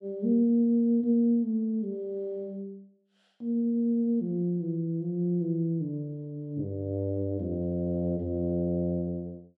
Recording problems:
none

